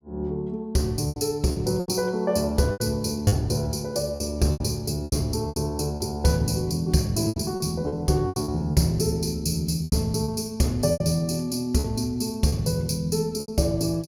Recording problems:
lost packets; 9% of the sound replaced, filled with repeated pitch periods

